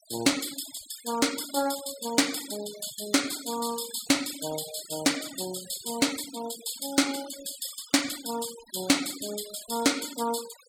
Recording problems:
denoising artefacts; signal-to-artefact ratio 13 dB

